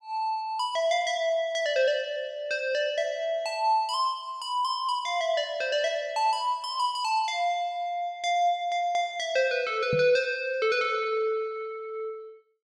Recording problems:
knock on the microphone; at 10 s; peak -1 dB vs average level

